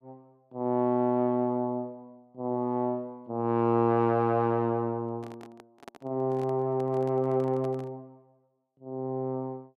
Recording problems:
handling noise; from 5 to 8 s; peak -12 dB vs average level

